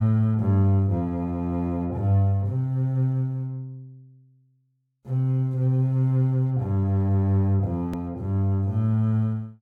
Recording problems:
click at an edit; at 8 s

